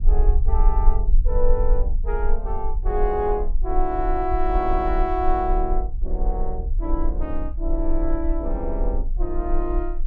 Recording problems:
rumble; below 40 Hz, strongest tone 18 Hz, SNR -1 dB

